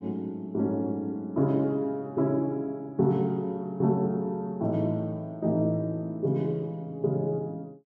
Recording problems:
none

